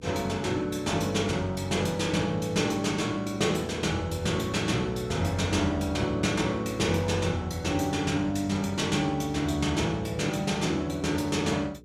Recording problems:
hum; 60 Hz, harmonics up to 480 Hz, SNR 24 dB

